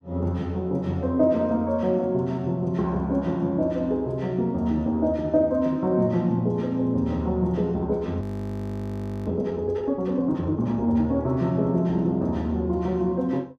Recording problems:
frozen audio; at 8 s for 1 s

